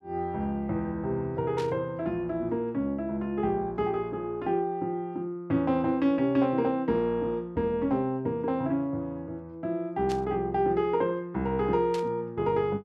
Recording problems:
static burst; at 1.5 s, at 10 s and at 12 s; peak -8 dB vs average level

